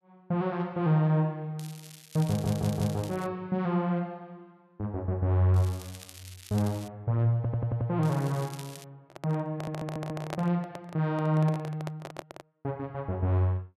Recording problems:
crackle; from 1.5 to 3.5 s, from 5.5 to 7 s and at 8 s; loose cable, SNR 18 dB
audio stuttering; at 2.5 s, at 7.5 s and at 9.5 s
microphone handling noise; from 9 to 13 s; peak -2 dB vs average level

